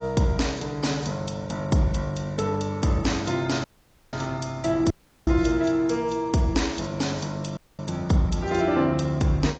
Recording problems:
lossy compression; AAC, log-spectral distance 4 dB, nothing above 7.3 kHz
dropout; at 3.5 s, at 5 s and at 7.5 s

